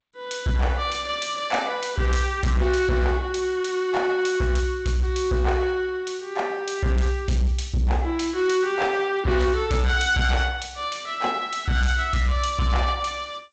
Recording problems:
codec artefacts; G.722, log-spectral distance 2 dB, nothing above 7.6 kHz
distorted audio; hard clipping, signal-to-distortion ratio 11 dB

